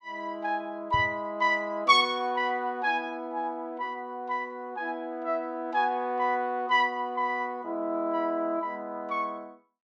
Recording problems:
microphone bump; at 1 s; peak -3 dB vs average level

